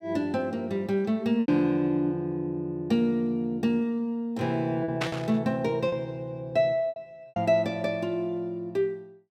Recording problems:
lost packets; 4% of the sound replaced, filled with repeated pitch periods
burst of static; at 5 s; peak +1 dB vs average level

